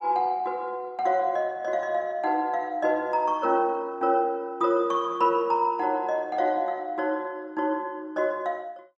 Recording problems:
none

